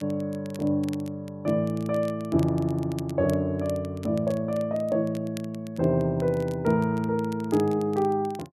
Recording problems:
crackle; vinyl, SNR 24 dB

